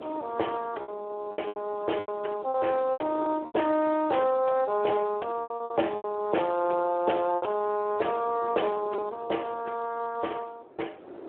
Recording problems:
telephone audio; 260 Hz to 3.3 kHz, Speex
wind noise; below 630 Hz, SNR 17 dB
packet loss; 8% of the sound replaced, filled with repeated pitch periods

